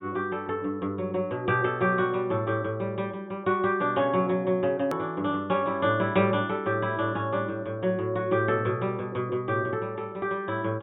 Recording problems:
treble missing; nothing above 4 kHz
click at an edit; at 5 s

